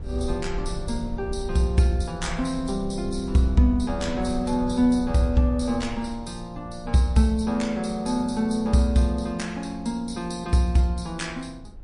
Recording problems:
codec artefacts; MP3, log-spectral distance 2 dB, nothing above 10.4 kHz
wind noise; below 86 Hz, SNR 14 dB

